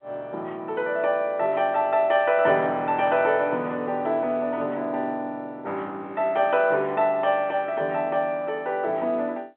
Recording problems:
telephone audio; 220 Hz to 3.5 kHz, G.711

